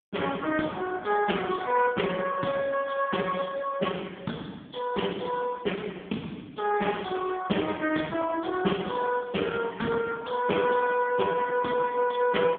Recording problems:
phone line; 170 Hz to 3.3 kHz, AMR-NB

